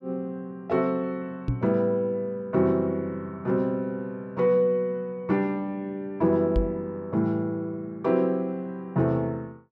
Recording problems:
microphone bump; at 1.5 s and at 6.5 s; peak +4 dB vs average level

